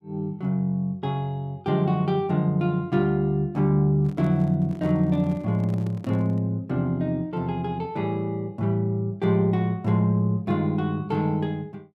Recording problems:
microphone handling noise; from 4 to 6.5 s; peak -10 dB vs average level

